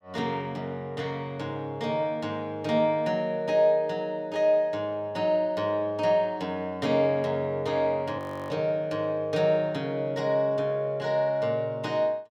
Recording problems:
frozen audio; at 8 s

